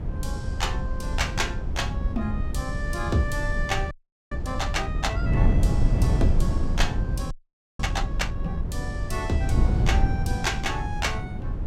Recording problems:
wind noise; below 120 Hz, SNR -3 dB
audio freezing; at 4 s and at 7.5 s

